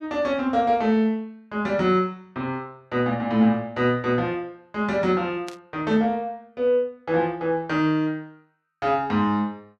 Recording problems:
burst of static; at 5.5 s; peak -10 dB vs average level

